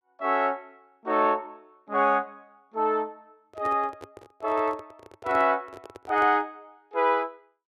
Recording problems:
handling noise; from 3.5 to 6.5 s; peak -9 dB vs average level

